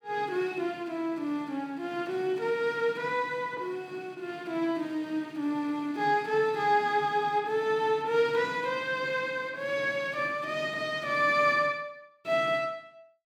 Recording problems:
none

